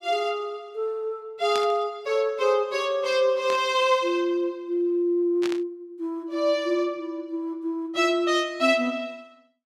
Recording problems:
burst of static; at 1.5 s, at 3.5 s and at 5.5 s; peak -4 dB vs average level

